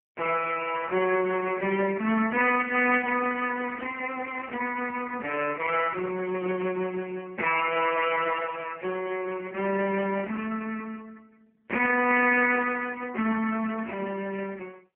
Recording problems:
phone line; 220 Hz to 2.8 kHz, AMR-NB

